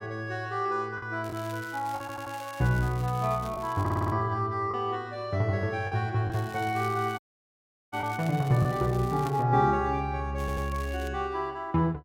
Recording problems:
packet loss; 2% of the sound replaced, filled with the last packet
crackling; from 1 to 4 s, from 6.5 to 9.5 s and at 10 s; loose cable, SNR 20 dB
audio stuttering; at 2 s, at 4 s and at 10 s
dropout; at 7 s for 0.5 s

